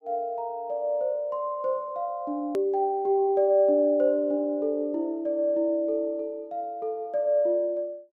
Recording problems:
edit click; at 2.5 s

